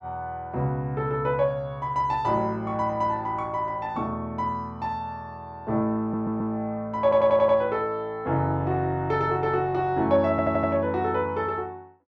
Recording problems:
stutter; at 6 s, at 7 s and at 10 s

